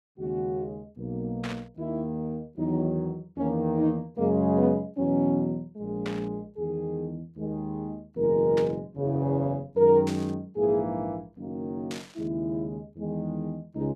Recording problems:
static burst; 5 times, first at 1.5 s; peak -5 dB vs average level

